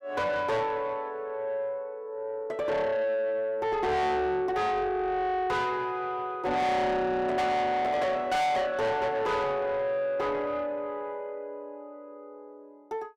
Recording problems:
distorted audio; soft clipping, signal-to-distortion ratio 7 dB

